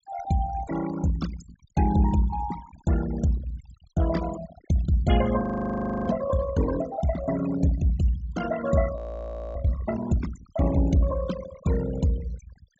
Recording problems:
treble missing; nothing above 8 kHz
noise reduction artefacts; signal-to-artefact ratio 13 dB
audio freezing; at 5.5 s for 0.5 s and at 9 s for 0.5 s

